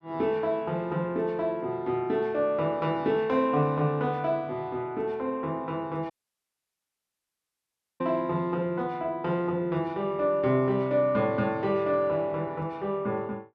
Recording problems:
audio cutting out; at 6 s for 2 s

